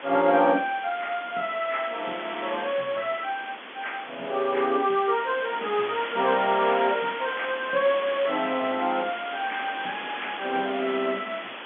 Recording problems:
telephone audio; 190 Hz to 3.5 kHz, G.711
background hiss; SNR 9 dB

